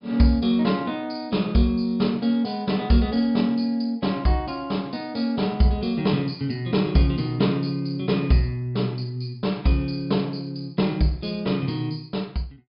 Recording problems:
low-pass filter; nothing above 5.5 kHz

